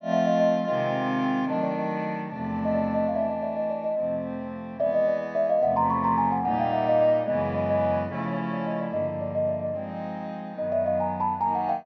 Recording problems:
treble cut off; nothing above 5.9 kHz

